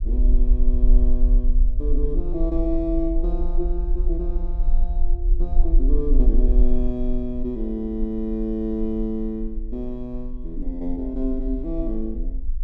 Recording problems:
rumble; below 42 Hz, SNR -3 dB

